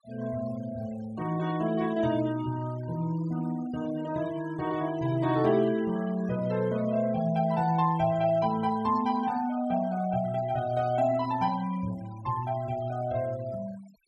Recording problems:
noise reduction artefacts; signal-to-artefact ratio 20 dB

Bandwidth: 12 kHz